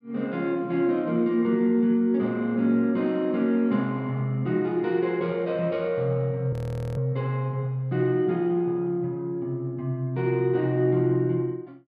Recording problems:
audio freezing; at 6.5 s

